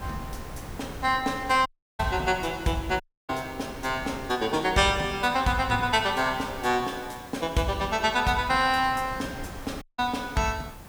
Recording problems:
background hiss; slope -2 dB per octave, SNR 25 dB
wind noise; below 710 Hz, SNR 17 dB
dropout; at 1.5 s, at 3 s and at 10 s

